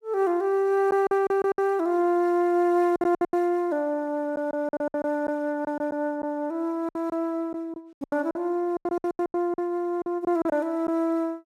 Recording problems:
packet loss; 12% of the sound replaced, filled with silence

